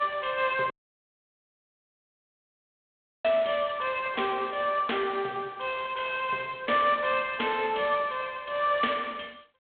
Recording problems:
telephone audio; 300 Hz to 3.5 kHz, G.726
dropout; at 0.5 s for 2.5 s

